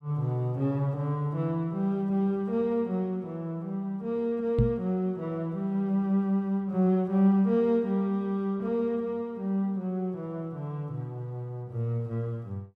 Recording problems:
knock on the microphone; at 4.5 s; peak +7 dB vs average level

